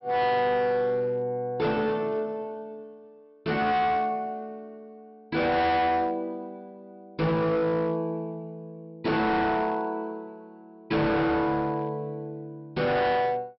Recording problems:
treble cut off; nothing above 5.5 kHz
distorted audio; hard clipping, signal-to-distortion ratio 7 dB

